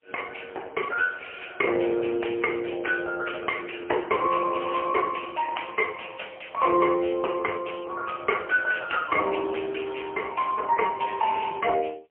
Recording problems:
telephone audio; 320 Hz to 3.1 kHz, AMR-NB, then MP3

